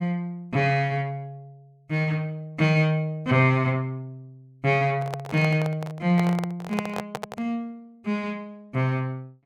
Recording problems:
microphone handling noise; from 5 to 7.5 s; peak -1 dB vs average level

